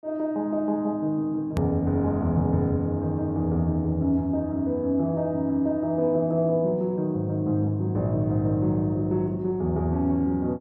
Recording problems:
edit click; at 1.5 s

